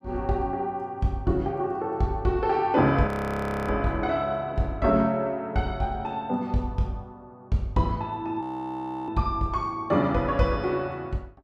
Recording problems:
frozen audio; at 3 s for 0.5 s and at 8.5 s for 0.5 s

